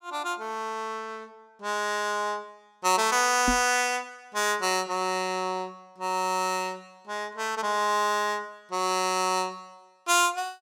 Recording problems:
knock on the microphone; at 3.5 s; peak +2 dB vs average level

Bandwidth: 16.5 kHz